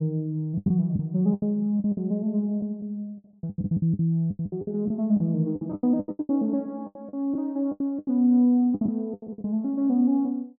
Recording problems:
packet loss; 17% of the sound replaced, filled with the last packet

